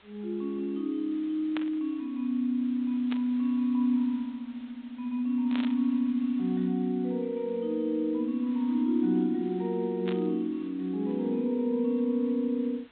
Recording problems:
treble cut off; nothing above 4 kHz
background hiss; SNR 27 dB
burst of static; 4 times, first at 1.5 s; peak -5 dB vs average level

